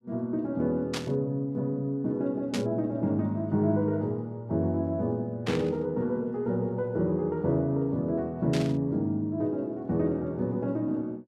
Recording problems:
burst of static; 4 times, first at 1 s; peak -2 dB vs average level

